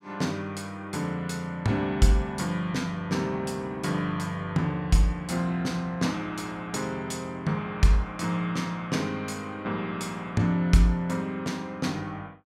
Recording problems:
none

